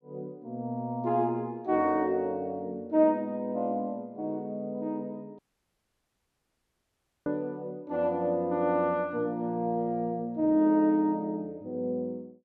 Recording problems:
dropout; at 5.5 s for 2 s

